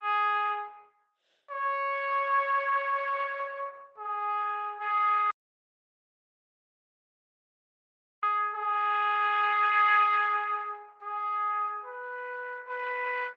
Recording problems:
lossy compression; Opus, log-spectral distance 3 dB
dropout; at 5.5 s for 3 s

